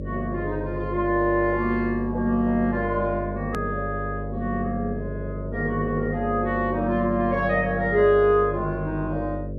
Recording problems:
hum; 50 Hz, harmonics up to 600 Hz, SNR 8 dB
edit click; at 3.5 s

